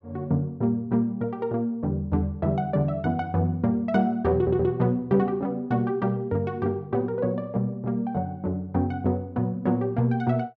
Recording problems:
stutter; at 4.5 s

